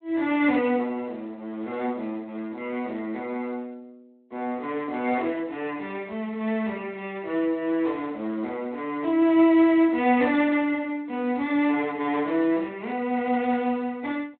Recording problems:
phone line; 220 Hz to 3.6 kHz, Speex

